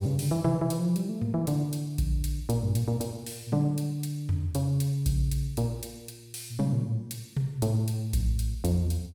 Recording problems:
none

